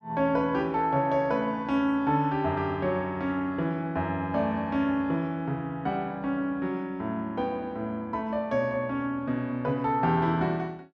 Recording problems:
none

